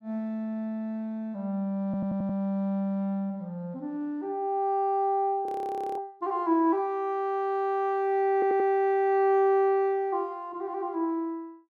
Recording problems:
audio stuttering; at 2 s and at 8.5 s
frozen audio; at 5.5 s for 0.5 s

